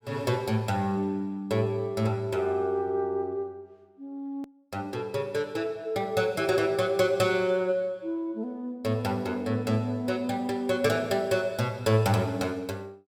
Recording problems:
hard cut with a click; at 4.5 s

